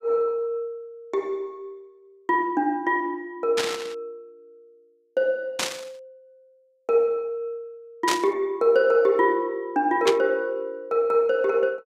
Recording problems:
burst of static; 4 times, first at 3.5 s; peak +3 dB vs average level

